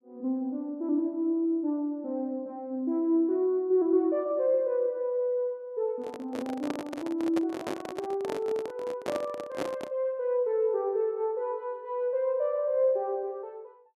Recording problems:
microphone handling noise; from 6 to 10 s; peak 0 dB vs average level

